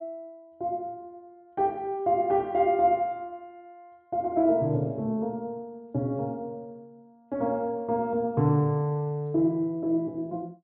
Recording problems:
treble missing; nothing above 4 kHz

